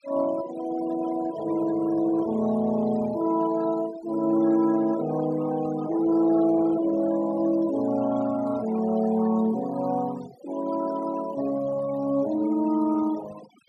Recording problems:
denoising artefacts; signal-to-artefact ratio 18 dB

